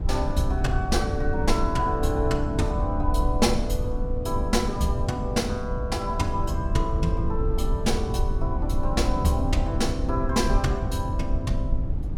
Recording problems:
rumble; below 86 Hz, SNR 1 dB

